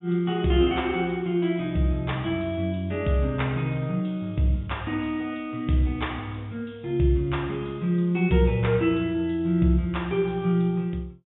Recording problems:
low-pass filter; nothing above 3.6 kHz

